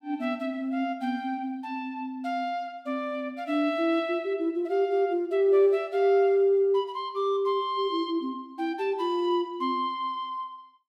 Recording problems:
none

